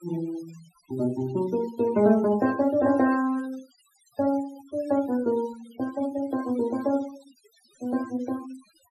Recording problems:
denoising artefacts; signal-to-artefact ratio 19 dB

